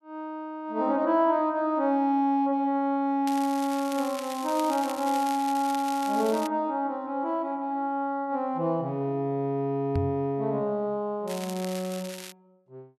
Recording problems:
crackle; from 3.5 to 6.5 s and from 11 to 12 s; loose cable, SNR 13 dB
microphone thump; at 10 s; peak +2 dB vs average level

